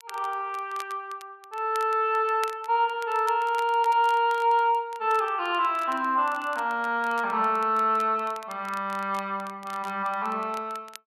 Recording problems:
crackle; vinyl, SNR 22 dB

